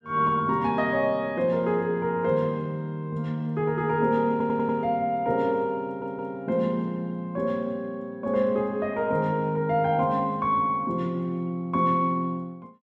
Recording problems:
audio stuttering; at 4.5 s and at 6 s

